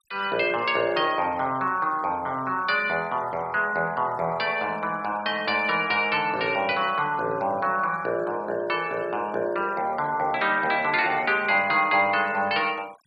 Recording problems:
denoising artefacts; signal-to-artefact ratio 25 dB

